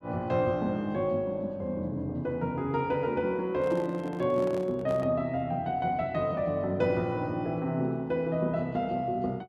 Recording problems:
handling noise; from 3.5 to 5 s; peak -9 dB vs average level

